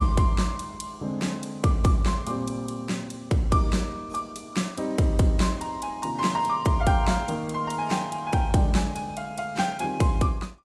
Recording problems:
lossy codec; AAC, log-spectral distance 3 dB, nothing above 11.3 kHz

